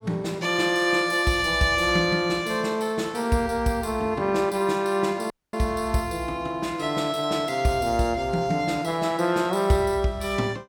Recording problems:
dropout; at 5.5 s

